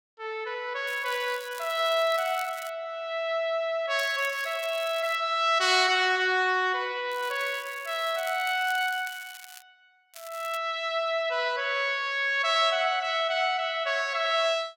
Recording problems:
crackling; 4 times, first at 1 s; loose cable, SNR 19 dB

